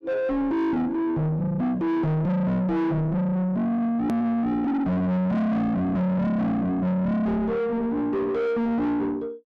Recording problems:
distortion; soft clipping, signal-to-distortion ratio 6 dB
click at an edit; at 4 s

